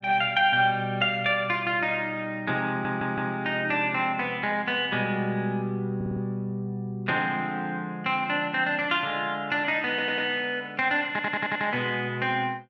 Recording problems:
audio stuttering; 4 times, first at 2.5 s

